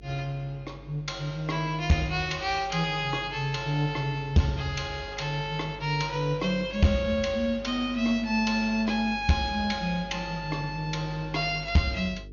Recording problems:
treble cut off; nothing above 6.8 kHz
distortion; hard clipping, uneven, signal-to-distortion ratio 11 dB
mains hum; 50 Hz, harmonics up to 450 Hz, SNR 19 dB

